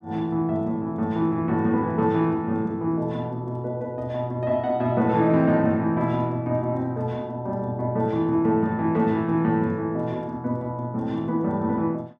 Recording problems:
none

